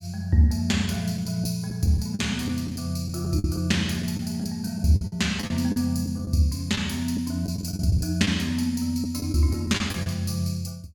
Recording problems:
packet loss; 8% of the sound replaced, filled with the last packet

